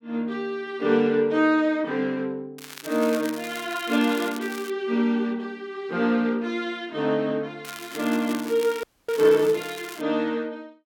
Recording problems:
crackling; from 2.5 to 4.5 s and from 7.5 to 10 s; loose cable, SNR 15 dB
frozen audio; at 9 s

